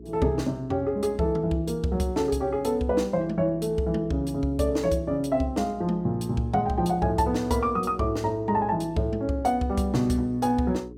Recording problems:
hum; 60 Hz, harmonics up to 420 Hz, SNR 18 dB

